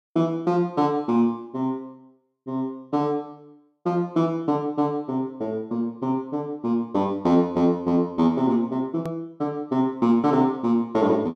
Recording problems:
hard cut with a click; at 9 s

